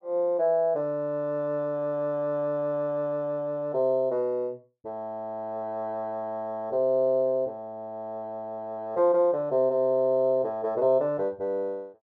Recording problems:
none

